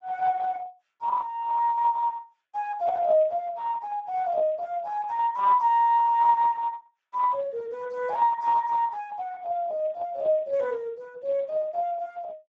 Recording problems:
lossy compression; Speex, log-spectral distance 2 dB

